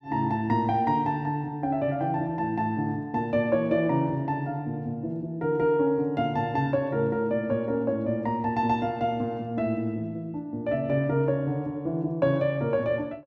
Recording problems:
none

